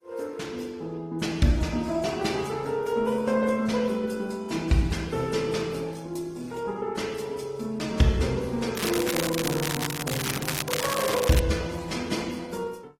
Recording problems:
lossy compression; Opus, then AAC, log-spectral distance 5 dB, nothing above 15.1 kHz
crackling; from 9 to 11 s; loose cable, SNR 3 dB

